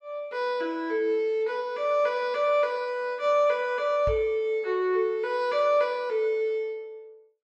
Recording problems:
microphone thump; at 4 s; peak -4 dB vs average level

